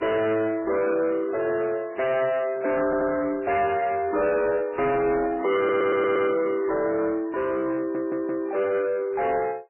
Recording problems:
codec artefacts; MP3, log-spectral distance 3 dB, nothing above 3 kHz
distorted audio; soft clipping, signal-to-distortion ratio 10 dB
audio stuttering; at 3 s, at 5.5 s and at 8 s

